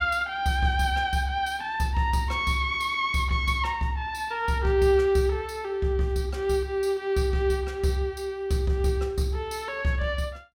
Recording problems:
none

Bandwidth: 16 kHz